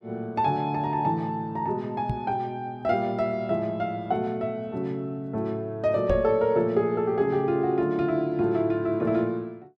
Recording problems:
microphone thump; at 2 s and at 6 s; peak 0 dB vs average level

